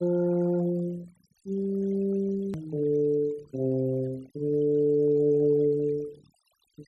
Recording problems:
denoising artefacts; signal-to-artefact ratio 26 dB
click at an edit; at 2.5 s

